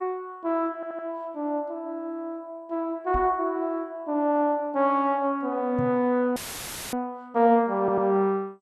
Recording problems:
codec artefacts; MP2, log-spectral distance 2 dB
stutter; at 1 s and at 8 s
knock on the microphone; at 3 s and at 6 s; peak -1 dB vs average level
audio cutting out; at 6.5 s for 0.5 s; filled with static

